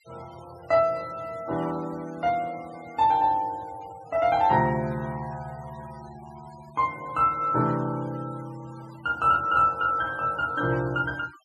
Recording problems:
denoising artefacts; signal-to-artefact ratio 24 dB

